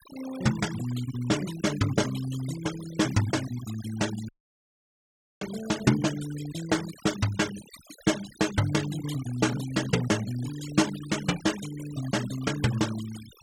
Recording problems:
noise reduction artefacts; signal-to-artefact ratio 13 dB
dropout; at 4.5 s for 1 s

